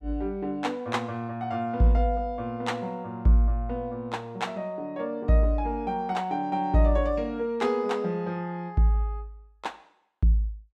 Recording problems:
none

